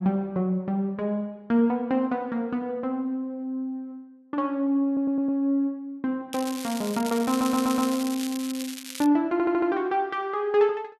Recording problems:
audio stuttering; at 5 s, at 7.5 s and at 9.5 s
crackling; from 6.5 to 9 s; loose cable, SNR 11 dB

